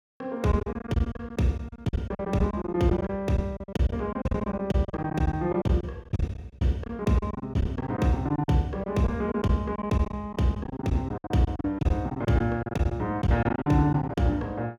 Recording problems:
lost packets; 15% of the sound replaced, filled with silence

